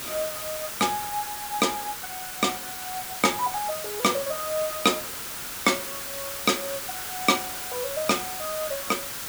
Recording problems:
background hiss; SNR 4 dB

